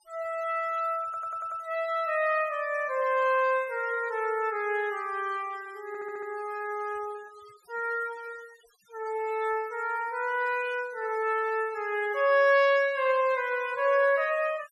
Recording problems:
noise reduction artefacts; signal-to-artefact ratio 22 dB
stutter; at 1 s and at 6 s

